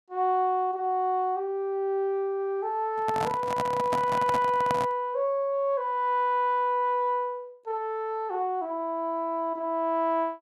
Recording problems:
microphone handling noise; from 3 to 5 s; peak 0 dB vs average level

